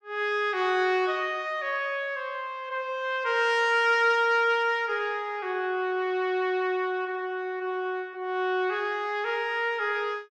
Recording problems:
none

